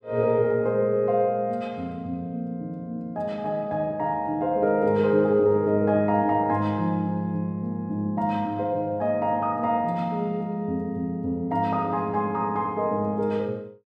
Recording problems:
none

